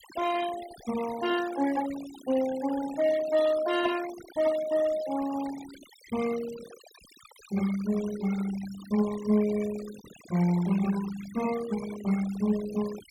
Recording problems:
noise reduction artefacts; signal-to-artefact ratio 15 dB

